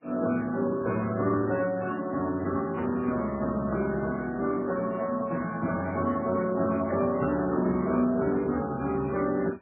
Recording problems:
codec artefacts; Speex, then MP3, log-spectral distance 4 dB, nothing above 2.5 kHz
handling noise; from 4.5 to 8 s; peak -10 dB vs average level

